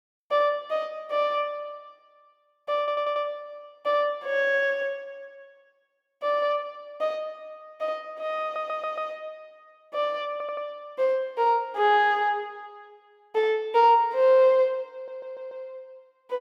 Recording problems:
audio stuttering; 4 times, first at 3 s

